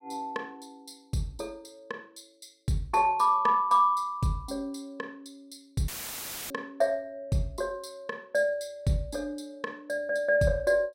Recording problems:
audio cutting out; at 6 s for 0.5 s; filled with static

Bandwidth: 16 kHz